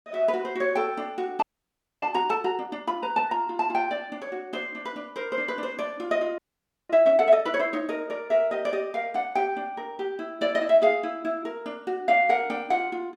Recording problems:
audio freezing; at 1.5 s for 0.5 s and at 6.5 s for 0.5 s

